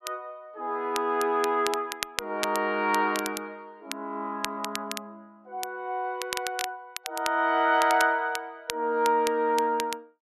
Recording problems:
crackling; vinyl, SNR 10 dB

